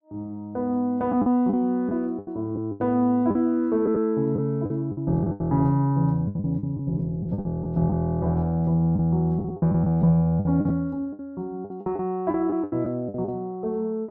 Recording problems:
packet loss; 11% of the sound replaced, filled with the last packet

